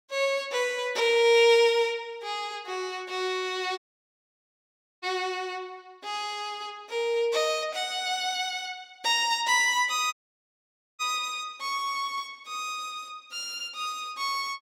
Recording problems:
dropout; at 4 s for 1 s and at 10 s for 1 s

